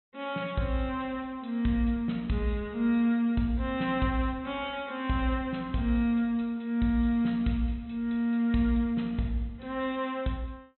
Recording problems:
treble cut off; nothing above 4 kHz

